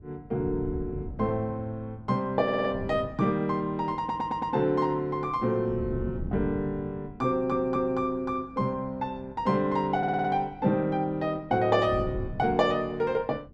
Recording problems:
wind on the microphone; below 190 Hz, SNR 14 dB
audio stuttering; 4 times, first at 2.5 s

